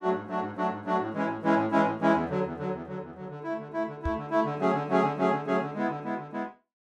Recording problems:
microphone thump; at 4 s; peak -1 dB vs average level

